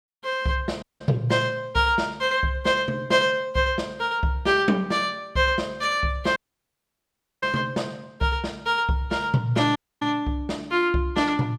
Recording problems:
dropout; at 1 s, at 6.5 s for 1 s and at 10 s

